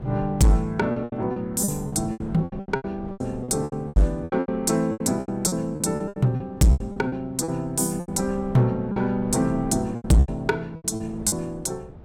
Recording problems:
distortion; hard clipping, signal-to-distortion ratio 11 dB
wind noise; below 330 Hz, SNR 17 dB
packet loss; 17% of the sound replaced, filled with repeated pitch periods

